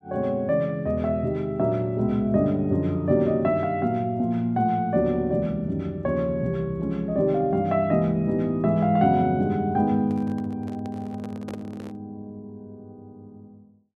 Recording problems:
handling noise; from 10 to 12 s; peak -11 dB vs average level

